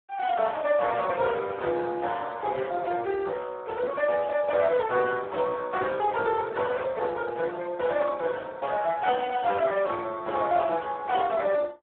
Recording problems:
phone line; 370 Hz to 3.6 kHz, Speex

